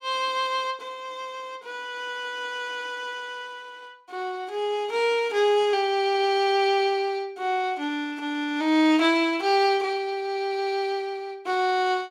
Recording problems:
none

